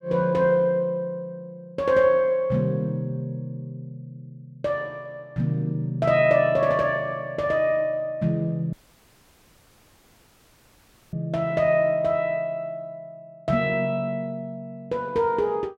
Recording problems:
dropout; at 8.5 s for 2.5 s

